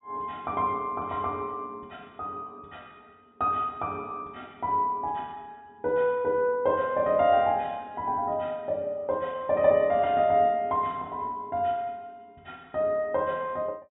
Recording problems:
low-pass filter; nothing above 4 kHz

